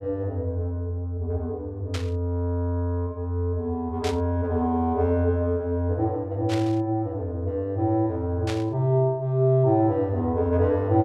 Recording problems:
burst of static; 4 times, first at 2 s; peak -5 dB vs average level

